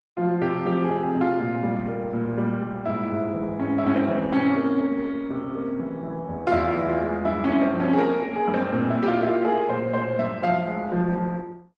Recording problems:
lossy compression; Opus, log-spectral distance 2 dB

